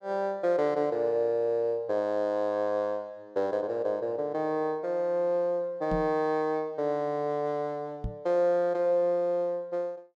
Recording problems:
knock on the microphone; at 6 s and at 8 s; peak -2 dB vs average level

